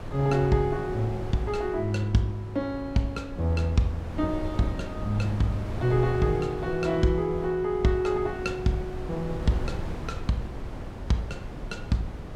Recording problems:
wind noise; below 300 Hz, SNR 10 dB

